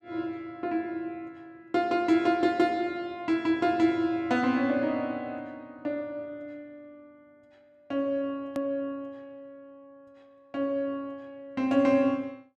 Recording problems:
hard cut with a click; at 8.5 s

